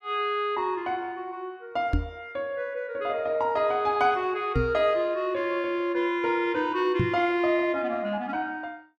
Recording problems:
microphone bump; at 2 s, at 4.5 s and at 7 s; peak +4 dB vs average level

